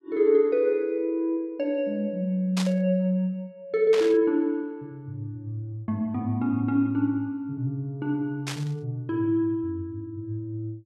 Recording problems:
static burst; at 2.5 s, at 4 s and at 8.5 s; peak -2 dB vs average level

